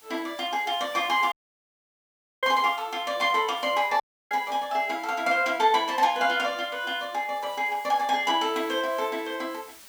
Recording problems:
hiss; slope +1 dB per octave, SNR 24 dB
dropout; at 1.5 s for 1 s and at 4 s

